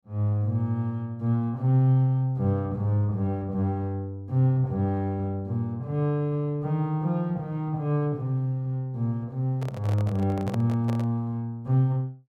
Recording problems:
microphone handling noise; from 9.5 to 11 s; peak -6 dB vs average level

